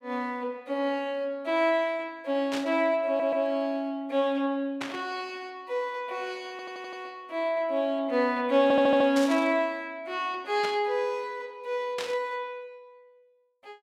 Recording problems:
burst of static; 5 times, first at 2.5 s; peak -3 dB vs average level
stutter; at 3 s, at 6.5 s and at 8.5 s

